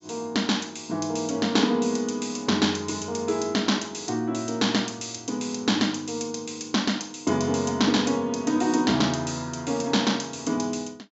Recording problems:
treble cut off; nothing above 8 kHz

